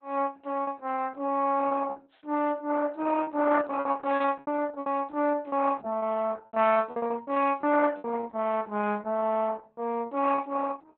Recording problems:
lossy codec; Opus, log-spectral distance 3 dB, nothing above 3.6 kHz
lost packets; 11% of the sound replaced, filled with repeated pitch periods

